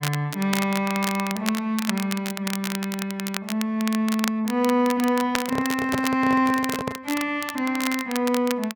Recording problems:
crackling; vinyl, SNR 8 dB
handling noise; from 5.5 to 7 s; peak +1 dB vs average level

